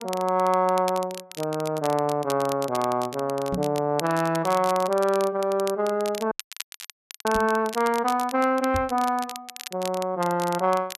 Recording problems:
crackling; vinyl, SNR 14 dB
microphone thump; at 3.5 s, at 7.5 s and at 9 s; peak -1 dB vs average level
audio freezing; at 6.5 s for 1 s

